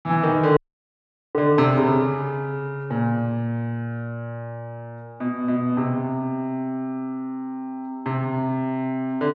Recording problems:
audio cutting out; at 0.5 s for 1 s

